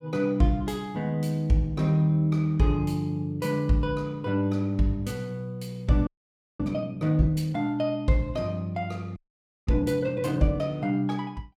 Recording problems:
audio freezing; at 6 s for 0.5 s and at 9 s for 0.5 s

